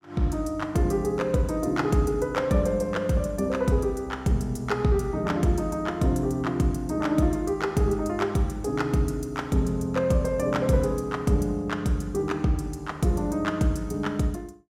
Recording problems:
none

